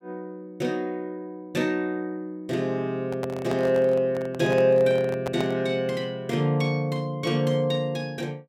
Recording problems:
microphone handling noise; from 3 to 5.5 s; peak -3 dB vs average level

